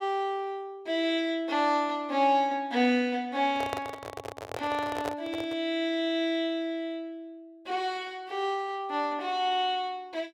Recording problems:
microphone handling noise; from 3.5 to 5.5 s; peak -1 dB vs average level

